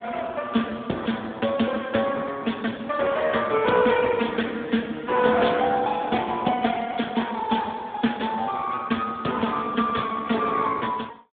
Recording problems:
phone line; 170 Hz to 3.5 kHz, Speex

